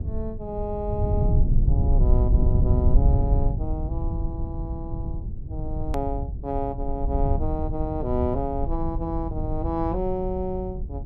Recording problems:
low-frequency rumble; below 98 Hz, SNR -4 dB
hard cut with a click; at 6 s

